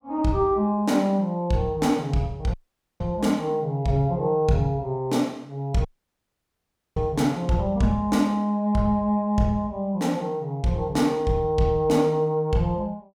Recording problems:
dropout; at 2.5 s and at 6 s for 1 s

